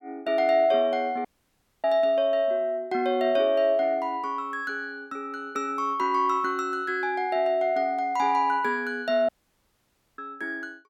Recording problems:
dropout; at 1.5 s for 0.5 s and at 9.5 s for 1 s

